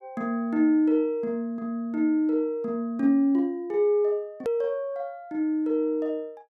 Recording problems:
edit click; at 4.5 s

